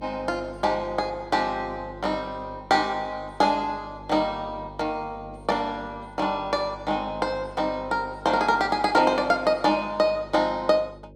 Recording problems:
hum; 50 Hz, harmonics up to 600 Hz, SNR 20 dB

